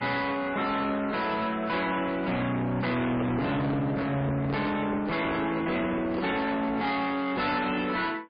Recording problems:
lossy codec; MP3, log-spectral distance 3 dB, nothing above 4.5 kHz
distorted audio; soft clipping, signal-to-distortion ratio 8 dB
handling noise; from 3 to 6.5 s; peak 0 dB vs average level

